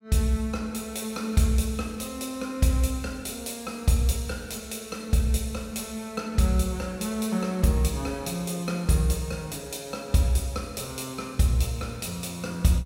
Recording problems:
none

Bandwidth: 16 kHz